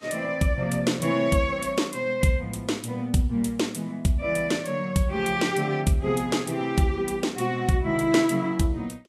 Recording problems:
codec artefacts; Vorbis, log-spectral distance 2 dB, nothing above 13.5 kHz

